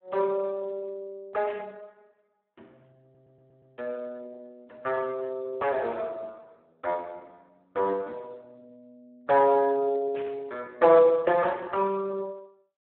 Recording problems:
phone line; 320 Hz to 3 kHz, Speex
burst of static; at 1.5 s and at 10 s; peak -13 dB vs average level
stutter; at 3 s

